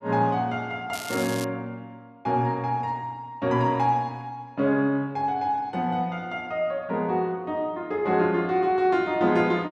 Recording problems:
crackle; at 1 s; loose cable, SNR 12 dB

